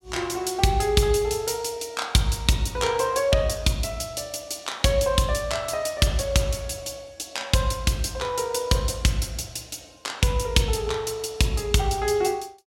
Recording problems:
none

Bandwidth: 16 kHz